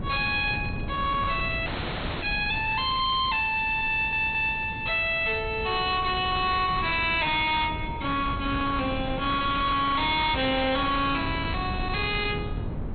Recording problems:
treble missing; nothing above 4.3 kHz
distortion; hard clipping, signal-to-distortion ratio 10 dB
wind noise; below 290 Hz, SNR 10 dB
audio freezing; at 1.5 s for 0.5 s
audio stuttering; at 4 s

